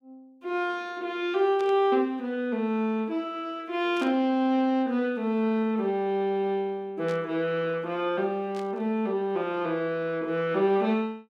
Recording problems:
burst of static; 4 times, first at 1.5 s; peak -13 dB vs average level

